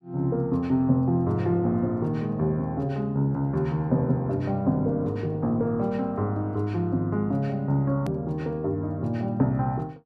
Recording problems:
click at an edit; at 8 s

